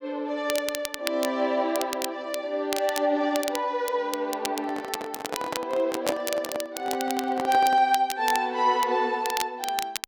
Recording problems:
crackling; vinyl, SNR 9 dB
handling noise; from 4.5 to 8 s; peak 0 dB vs average level

